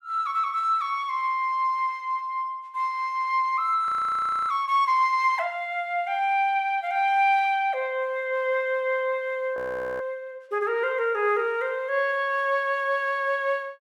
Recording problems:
frozen audio; at 4 s for 0.5 s and at 9.5 s

